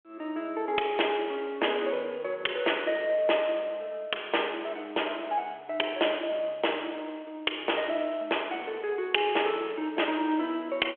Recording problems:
telephone audio; 300 Hz to 3.4 kHz, G.726

